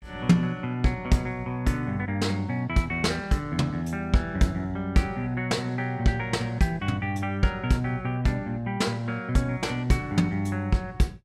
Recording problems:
none

